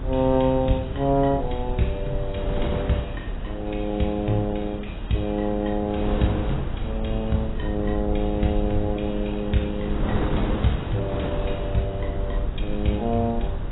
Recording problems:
codec artefacts; AAC, log-spectral distance 3 dB, nothing above 3.8 kHz
low-frequency rumble; below 70 Hz, SNR 7 dB
wind on the microphone; below 440 Hz, SNR 6 dB

